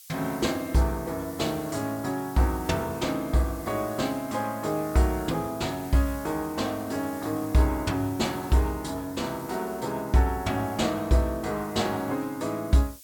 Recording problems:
hiss; SNR 18 dB

